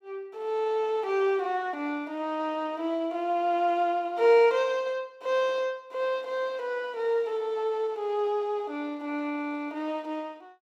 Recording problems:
none

